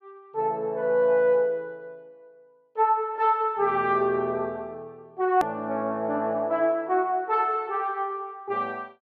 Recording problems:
hard cut with a click; at 5.5 s

